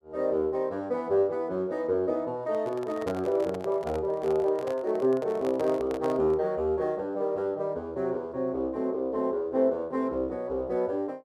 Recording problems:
handling noise; from 2.5 to 6.5 s; peak -5 dB vs average level

